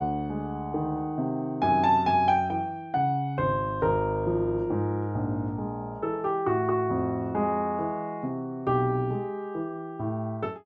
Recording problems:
none

